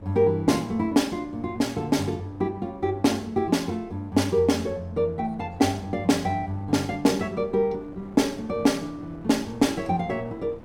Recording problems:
wind on the microphone; below 480 Hz, SNR 21 dB

